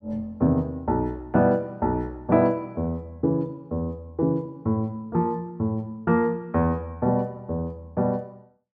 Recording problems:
none

